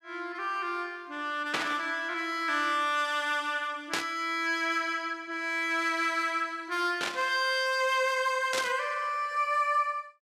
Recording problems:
static burst; 4 times, first at 1.5 s; peak +3 dB vs average level

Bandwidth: 14.5 kHz